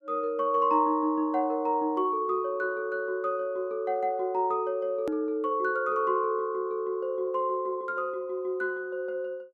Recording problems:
hard cut with a click; at 5 s

